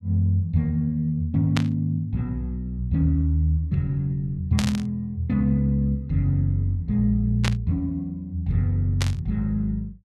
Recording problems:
static burst; 4 times, first at 1.5 s; peak 0 dB vs average level

